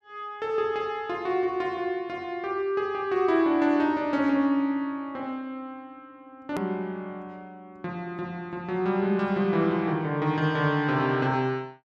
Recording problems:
edit click; at 6.5 s

